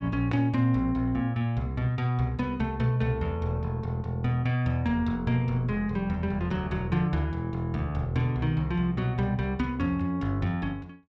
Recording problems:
none

